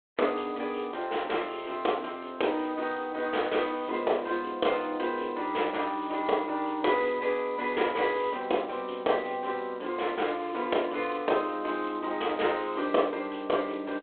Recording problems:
phone line; 280 Hz to 3.6 kHz, G.726

